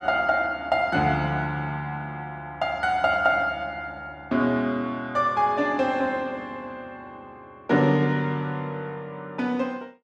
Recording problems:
none

